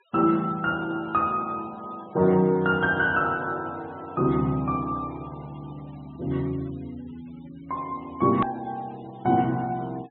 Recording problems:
low-pass filter; nothing above 3.9 kHz
noise reduction artefacts; signal-to-artefact ratio 26 dB
edit click; at 8.5 s

